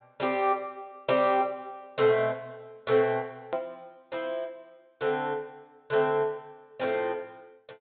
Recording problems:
treble cut off; nothing above 4 kHz
edit click; at 3.5 s

